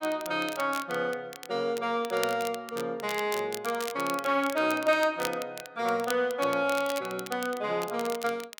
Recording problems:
crackling; vinyl, SNR 13 dB

